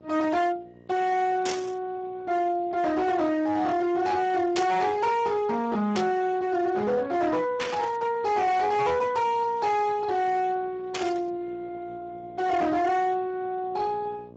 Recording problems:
lossy codec; Speex, log-spectral distance 3 dB, nothing above 7.3 kHz
distortion; hard clipping, uneven, signal-to-distortion ratio 11 dB
mains hum; 60 Hz, harmonics up to 1.1 kHz, SNR 24 dB
static burst; 5 times, first at 1.5 s; peak -1 dB vs average level

